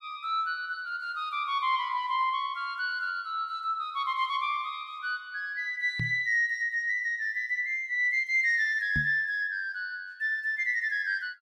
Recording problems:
microphone bump; at 6 s and at 9 s; peak -1 dB vs average level

